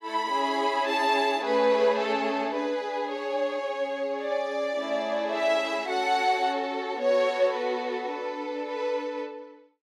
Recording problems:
none

